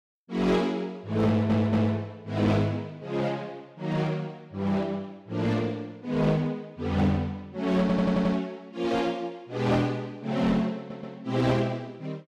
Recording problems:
distortion; hard clipping, uneven, signal-to-distortion ratio 10 dB
stutter; at 1.5 s, at 8 s and at 11 s

